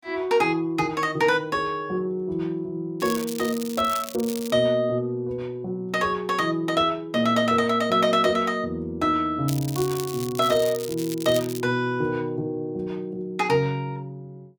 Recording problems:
crackle; from 3 to 4.5 s and from 9.5 to 12 s; loose cable, SNR 12 dB

